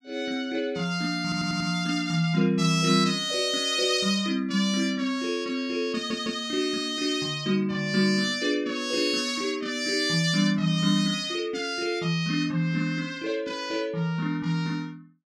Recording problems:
audio stuttering; at 1 s and at 6 s

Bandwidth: 14.5 kHz